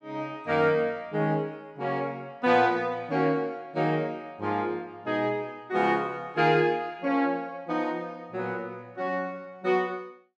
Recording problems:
none

